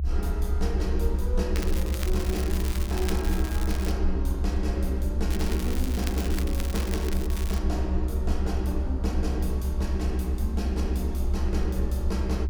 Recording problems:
rumble; below 68 Hz, strongest tone 64 Hz, SNR -3 dB
crackle; from 1.5 to 4 s and from 5.5 to 7.5 s; loose cable, SNR 7 dB

